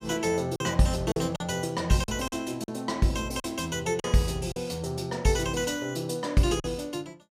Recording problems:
packet loss; 6% of the sound replaced, filled with silence

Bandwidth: 15.5 kHz